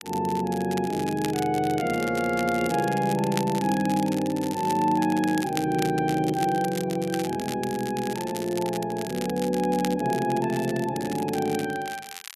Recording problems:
crackling; vinyl, SNR 13 dB

